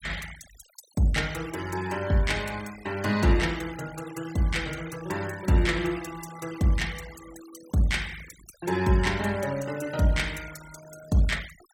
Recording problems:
noise reduction artefacts; signal-to-artefact ratio 18 dB

